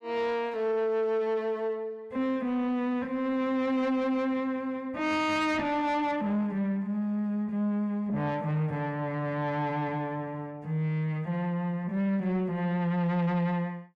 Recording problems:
distortion; soft clipping, signal-to-distortion ratio 11 dB

